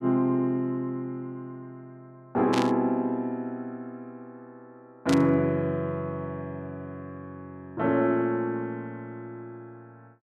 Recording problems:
burst of static; at 2.5 s and at 5 s; peak -1 dB vs average level

